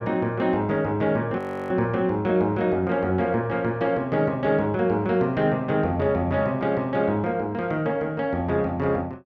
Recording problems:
frozen audio; at 1.5 s

